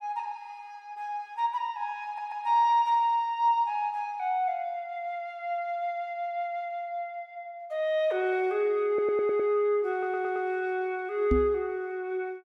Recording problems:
audio stuttering; at 2 s, at 9 s and at 10 s
microphone thump; at 11 s; peak +5 dB vs average level

